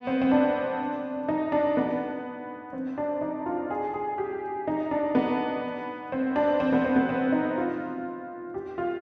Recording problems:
none

